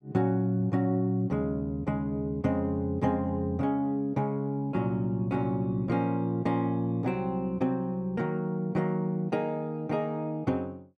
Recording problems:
none

